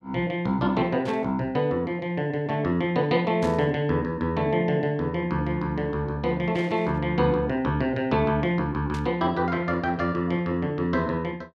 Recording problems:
burst of static; 4 times, first at 1 s; peak -11 dB vs average level

